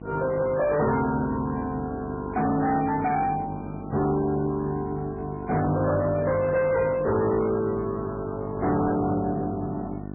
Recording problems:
lossy compression; MP3, log-spectral distance 3 dB, nothing above 2.4 kHz
distorted audio; hard clipping, uneven, signal-to-distortion ratio 10 dB
hum; 50 Hz, harmonics up to 1.1 kHz, SNR 12 dB

